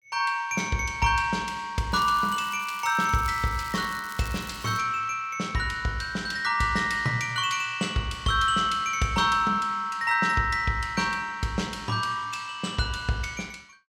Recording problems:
crackling; from 2 to 5 s; loose cable, SNR 18 dB

